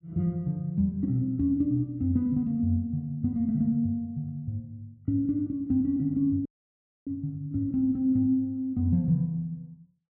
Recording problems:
audio cutting out; at 6.5 s for 0.5 s

